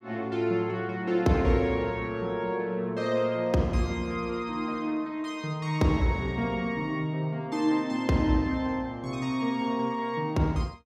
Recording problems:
none

